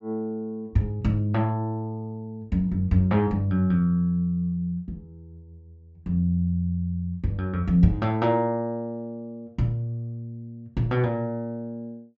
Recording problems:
treble cut off; nothing above 8 kHz

